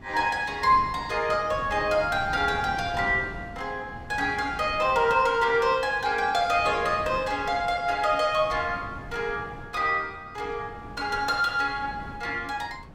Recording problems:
wind noise; below 370 Hz, SNR 17 dB

